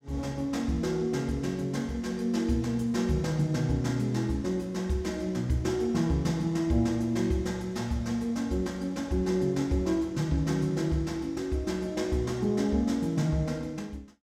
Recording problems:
none

